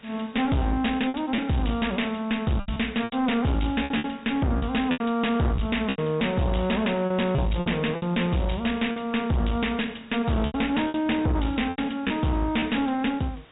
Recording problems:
low-pass filter; nothing above 4 kHz
distorted audio; hard clipping, uneven, signal-to-distortion ratio 6 dB
hiss; SNR 27 dB
packet loss; 8% of the sound replaced, filled with repeated pitch periods

